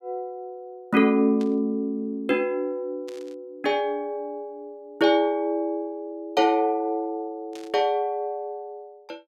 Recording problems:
burst of static; at 1.5 s, at 3 s and at 7.5 s; peak -15 dB vs average level

